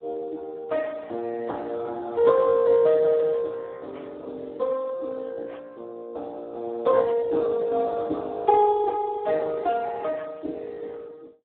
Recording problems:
phone line; 280 Hz to 2.1 kHz, Speex

